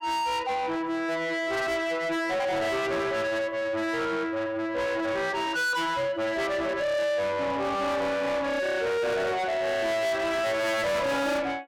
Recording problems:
distortion; soft clipping, signal-to-distortion ratio 7 dB

